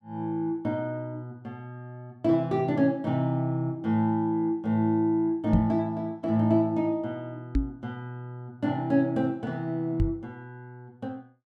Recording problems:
microphone bump; at 5.5 s, at 7.5 s and at 10 s; peak +6 dB vs average level

